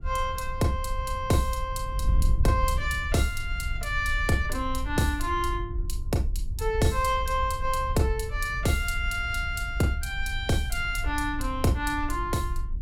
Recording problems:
wind noise; below 68 Hz, SNR 5 dB

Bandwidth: 17.5 kHz